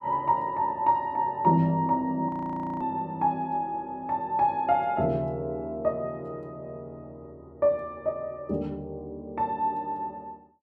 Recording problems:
frozen audio; at 2.5 s for 0.5 s

